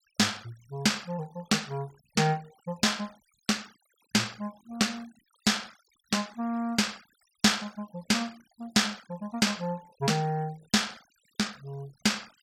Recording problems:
denoising artefacts; signal-to-artefact ratio 25 dB

